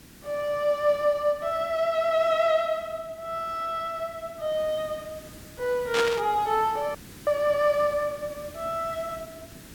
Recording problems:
hiss; SNR 20 dB
static burst; at 6 s; peak +3 dB vs average level
audio cutting out; at 7 s

